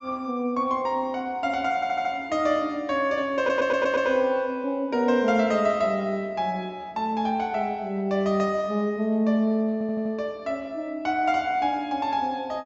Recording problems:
treble missing; nothing above 8 kHz
audio stuttering; at 2 s, at 3.5 s and at 9.5 s

